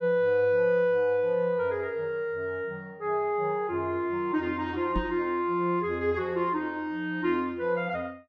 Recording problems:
microphone bump; at 5 s; peak 0 dB vs average level

